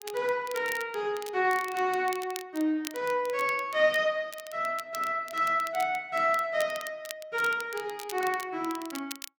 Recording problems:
crackling; vinyl, SNR 15 dB

